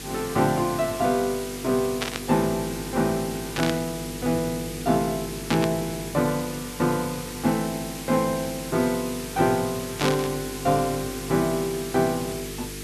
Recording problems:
hum; 50 Hz, harmonics up to 450 Hz, SNR 14 dB
background hiss; slope +1 dB per octave, SNR 11 dB
static burst; 4 times, first at 2 s; peak +2 dB vs average level

